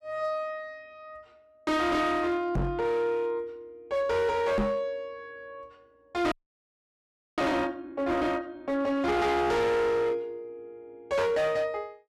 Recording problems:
distortion; hard clipping, signal-to-distortion ratio 8 dB
knock on the microphone; at 2.5 s and at 4.5 s; peak +4 dB vs average level
audio freezing; at 6.5 s for 1 s

